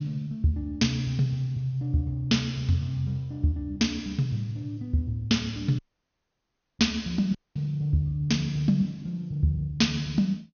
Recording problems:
low-pass filter; nothing above 6.5 kHz
dropout; at 6 s for 1 s and at 7.5 s

